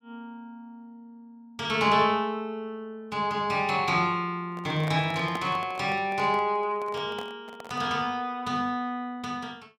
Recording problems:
handling noise; from 4.5 to 8 s; peak -4 dB vs average level

